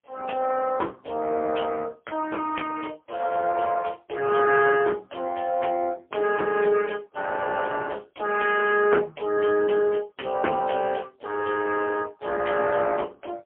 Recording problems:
telephone audio; 280 Hz to 3.2 kHz, AMR-NB, then MP3

